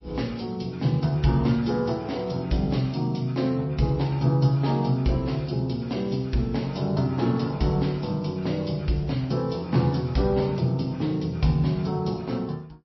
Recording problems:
codec artefacts; MP3, log-spectral distance 4 dB, nothing above 5.7 kHz

